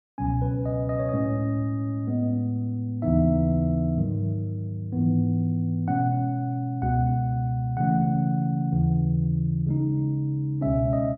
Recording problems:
none

